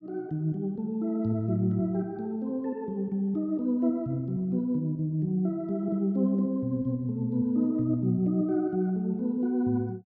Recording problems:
none

